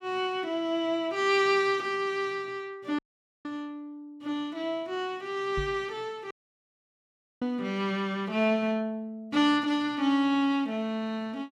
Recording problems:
audio cutting out; at 3 s and at 6.5 s for 1 s
microphone bump; at 5.5 s; peak -3 dB vs average level

